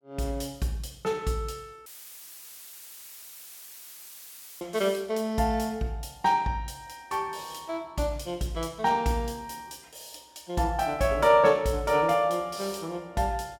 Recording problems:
dropout; at 2 s for 3 s; filled with static

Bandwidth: 17 kHz